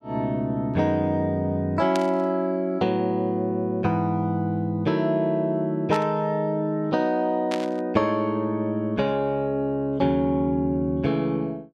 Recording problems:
static burst; at 2 s, at 6 s and at 7.5 s; peak -4 dB vs average level

